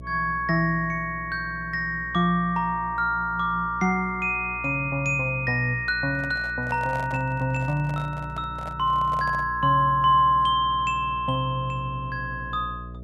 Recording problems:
hum; 60 Hz, harmonics up to 660 Hz, SNR 16 dB
microphone handling noise; from 6 to 9.5 s; peak -10 dB vs average level

